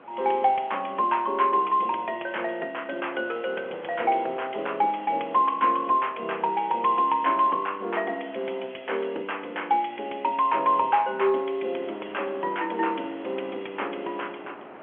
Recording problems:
telephone audio; 320 Hz to 3.3 kHz, G.711
wind on the microphone; below 1.2 kHz, SNR 22 dB

